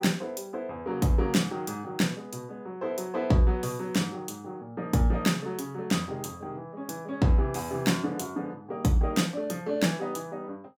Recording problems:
none

